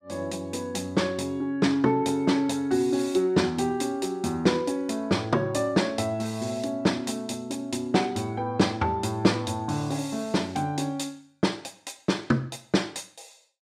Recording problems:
none

